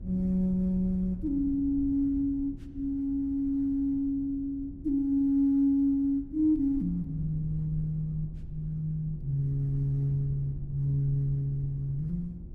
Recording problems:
hum; 50 Hz, harmonics up to 350 Hz, SNR 25 dB
rumble; below 100 Hz, SNR 15 dB

